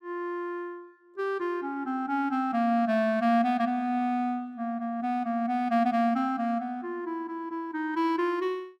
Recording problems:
none

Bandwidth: 14.5 kHz